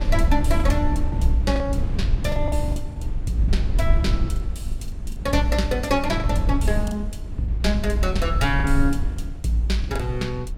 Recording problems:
low-frequency rumble; below 76 Hz, SNR 1 dB
lost packets; 7% of the sound replaced, filled with the last packet

